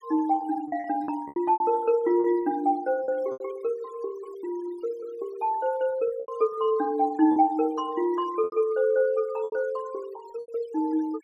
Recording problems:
noise reduction artefacts; signal-to-artefact ratio 23 dB
packet loss; 7% of the sound replaced, filled with repeated pitch periods

